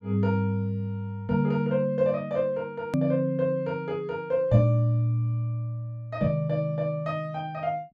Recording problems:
hard cut with a click; at 3 s

